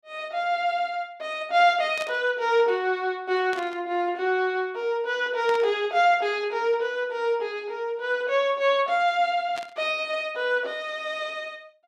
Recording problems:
burst of static; 4 times, first at 2 s; peak -8 dB vs average level

